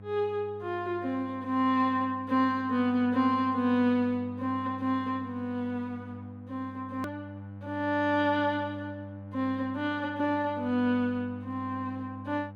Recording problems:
electrical hum; 50 Hz, harmonics up to 1 kHz, SNR 15 dB
click at an edit; at 7 s

